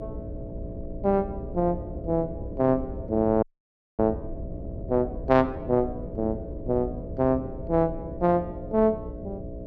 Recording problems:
hum; 60 Hz, harmonics up to 660 Hz, SNR 14 dB
wind noise; below 140 Hz, SNR 13 dB
frozen audio; at 3.5 s for 0.5 s

